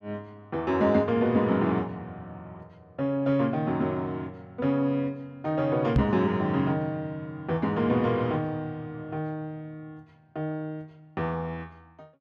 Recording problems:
microphone bump; at 6 s; peak +7 dB vs average level

